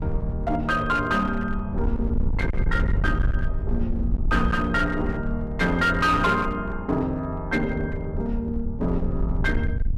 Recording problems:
distortion; hard clipping, uneven, signal-to-distortion ratio 11 dB
wind on the microphone; below 82 Hz, SNR 4 dB

